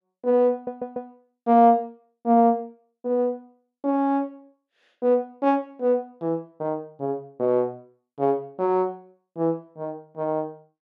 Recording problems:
audio stuttering; at 0.5 s

